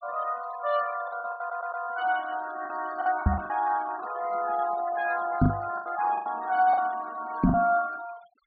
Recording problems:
treble cut off; nothing above 4.6 kHz
noise reduction artefacts; signal-to-artefact ratio 17 dB
lost packets; 8% of the sound replaced, filled with the last packet
audio stuttering; at 1.5 s
knock on the microphone; at 3.5 s, at 5.5 s and at 7.5 s; peak +10 dB vs average level

